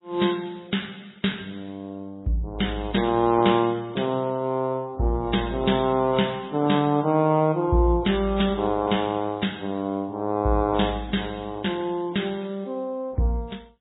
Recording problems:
lossy compression; AAC, then MP3, log-spectral distance 3 dB, nothing above 3.8 kHz

